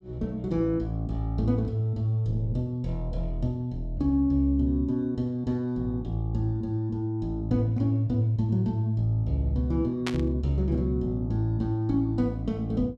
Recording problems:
static burst; at 10 s; peak 0 dB vs average level

